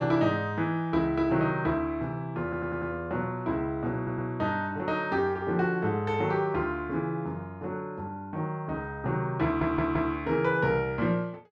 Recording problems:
stutter; at 2.5 s, at 4 s and at 9.5 s

